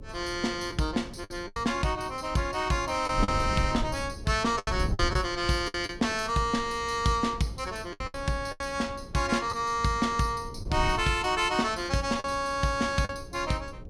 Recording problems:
hum; 60 Hz, harmonics up to 540 Hz, SNR 23 dB
wind on the microphone; below 120 Hz, SNR 12 dB
lost packets; 6% of the sound replaced, filled with the last packet

